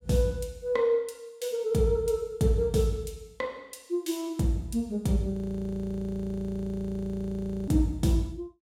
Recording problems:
frozen audio; at 5.5 s for 2.5 s

